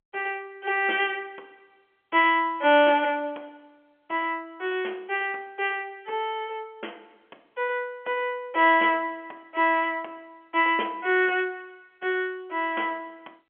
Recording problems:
telephone audio; 300 Hz to 3.4 kHz, G.711

